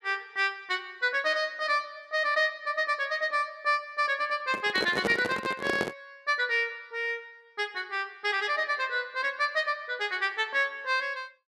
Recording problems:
microphone handling noise; from 4.5 to 6 s; peak +4 dB vs average level

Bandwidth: 12.5 kHz